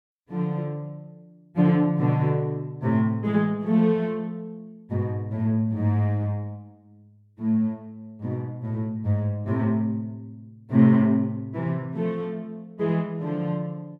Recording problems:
none

